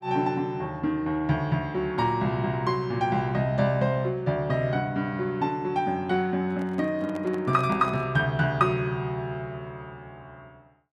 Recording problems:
handling noise; from 6.5 to 8 s; peak -7 dB vs average level

